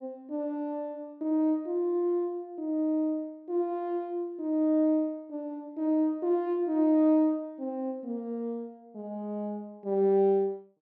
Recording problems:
none

